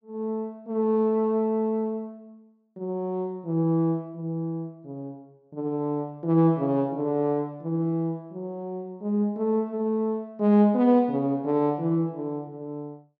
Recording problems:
low-pass filter; nothing above 7.7 kHz

